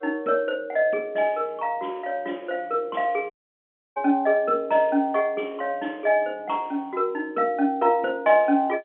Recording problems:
phone line; 220 Hz to 3.5 kHz, G.711
dropout; at 3.5 s for 0.5 s

